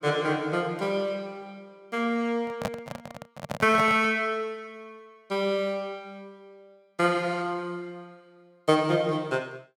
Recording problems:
microphone handling noise; from 2.5 to 4 s; peak +1 dB vs average level

